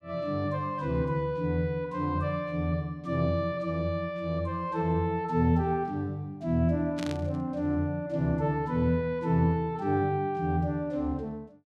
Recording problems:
static burst; at 7 s; peak -7 dB vs average level

